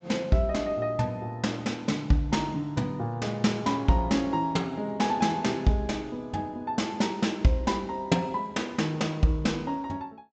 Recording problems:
treble missing; nothing above 8 kHz

